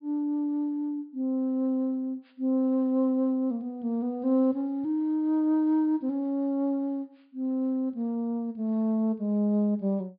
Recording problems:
treble missing; nothing above 4.9 kHz

